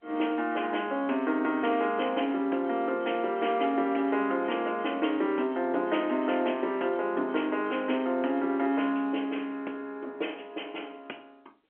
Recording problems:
telephone audio; 240 Hz to 3.3 kHz, G.711

